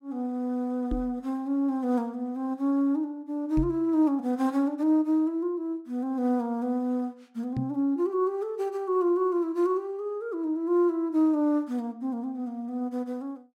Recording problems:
microphone thump; at 1 s, at 3.5 s and at 7.5 s; peak +1 dB vs average level

